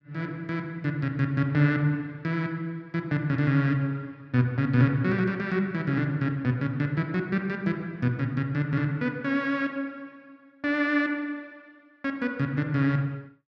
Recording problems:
none

